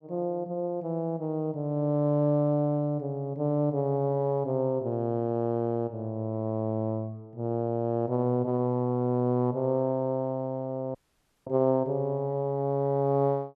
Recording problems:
audio cutting out; at 11 s for 0.5 s

